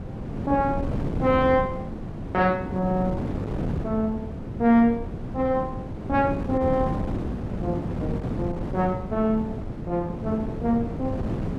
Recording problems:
wind noise; below 320 Hz, SNR 5 dB

